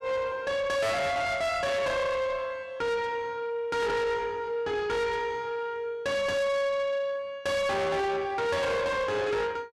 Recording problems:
distortion; soft clipping, signal-to-distortion ratio 7 dB

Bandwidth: 12.5 kHz